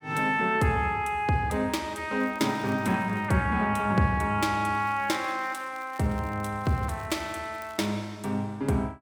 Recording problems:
crackling; from 2 to 3.5 s and from 5 to 8 s; loose cable, SNR 27 dB

